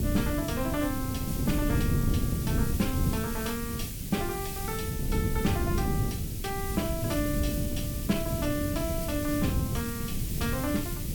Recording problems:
hiss; slope +6 dB per octave, SNR 5 dB
wind on the microphone; below 200 Hz, SNR -1 dB

